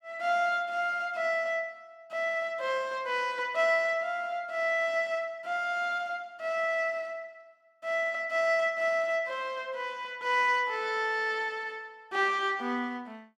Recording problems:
none

